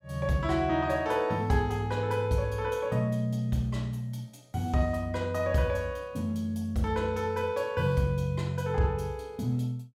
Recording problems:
none

